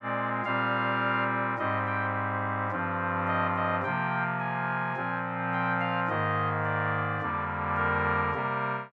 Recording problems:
none

